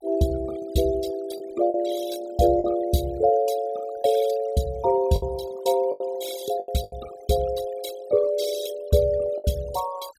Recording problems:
noise reduction artefacts; signal-to-artefact ratio 16 dB
packet loss; 5% of the sound replaced, filled with the last packet

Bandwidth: 16.5 kHz